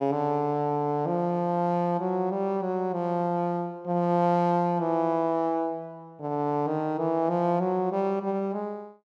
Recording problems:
none

